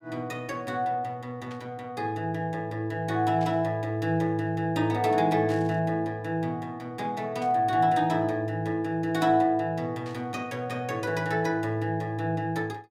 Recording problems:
static burst; 5 times, first at 1.5 s; peak -14 dB vs average level

